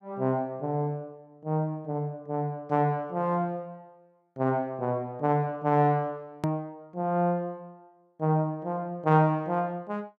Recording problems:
hard cut with a click; at 6.5 s

